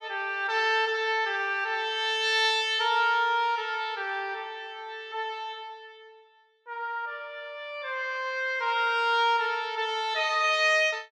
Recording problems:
none

